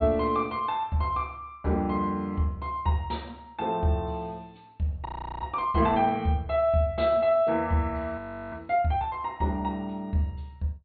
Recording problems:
treble missing; nothing above 4.4 kHz
frozen audio; at 5 s and at 8 s

